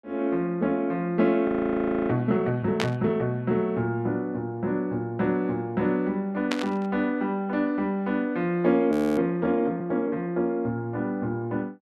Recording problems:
frozen audio; at 1.5 s for 0.5 s and at 9 s
static burst; at 3 s and at 6.5 s; peak +2 dB vs average level

